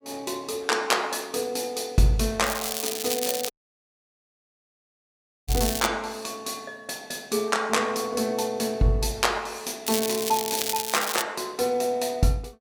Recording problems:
crackling; from 2.5 to 6 s and from 10 to 11 s; loose cable, SNR 3 dB
dropout; at 3.5 s for 2 s

